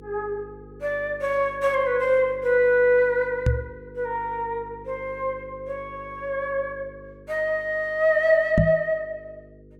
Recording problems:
mains hum; 50 Hz, harmonics up to 500 Hz, SNR 22 dB
microphone bump; at 3.5 s and at 8.5 s; peak +6 dB vs average level

